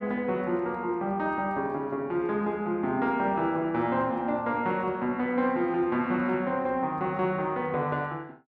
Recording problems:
none

